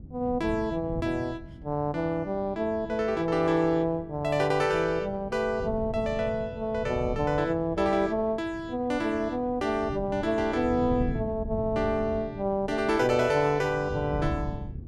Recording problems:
wind noise; below 170 Hz, SNR 12 dB

